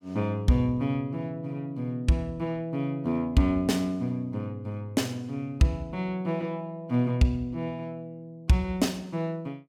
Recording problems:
none

